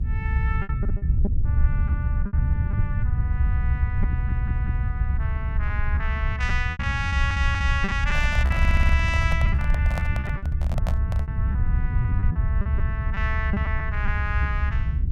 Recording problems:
low-frequency rumble; below 94 Hz, SNR -6 dB
lost packets; 10% of the sound replaced, filled with repeated pitch periods
audio stuttering; at 4 s, at 7 s and at 8.5 s
handling noise; from 8 to 11 s; peak +3 dB vs average level

